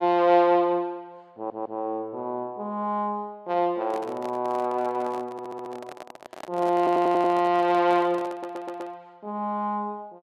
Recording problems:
audio stuttering; 4 times, first at 1.5 s
microphone handling noise; from 4 to 9 s; peak -9 dB vs average level

